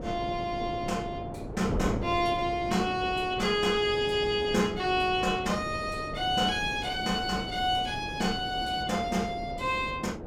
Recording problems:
wind on the microphone; below 460 Hz, SNR 9 dB

